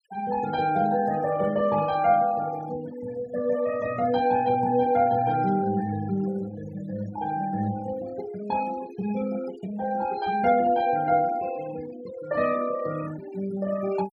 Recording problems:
denoising artefacts; signal-to-artefact ratio 17 dB

